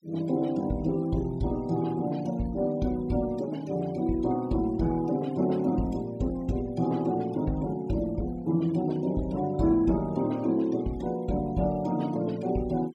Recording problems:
denoising artefacts; signal-to-artefact ratio 22 dB

